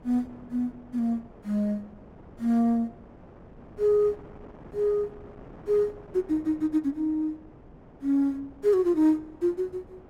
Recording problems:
wind on the microphone; below 570 Hz, SNR 22 dB

